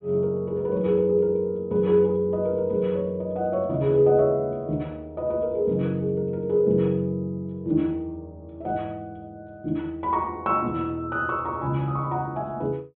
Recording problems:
low-pass filter; nothing above 4 kHz

